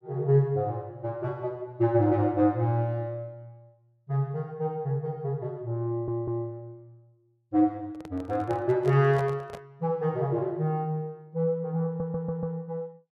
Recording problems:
stutter; at 6 s and at 12 s
handling noise; from 8 to 10 s; peak -5 dB vs average level

